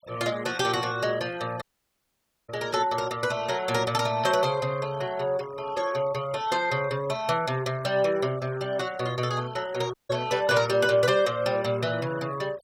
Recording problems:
denoising artefacts; signal-to-artefact ratio 20 dB
audio cutting out; at 1.5 s for 1 s and at 10 s

